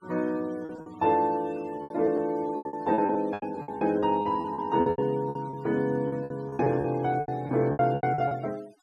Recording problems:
noise reduction artefacts; signal-to-artefact ratio 24 dB
packet loss; 18% of the sound replaced, filled with repeated pitch periods

